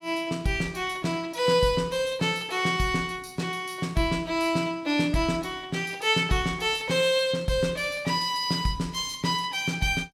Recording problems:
none

